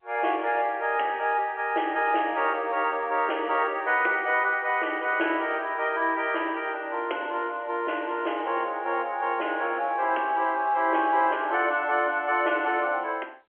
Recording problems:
phone line; 280 Hz to 3.3 kHz, G.711

